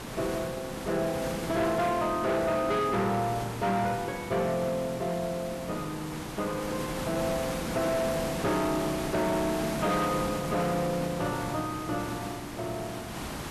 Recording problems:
distorted audio; hard clipping, signal-to-distortion ratio 11 dB
background hiss; slope -4 dB per octave, SNR 7 dB

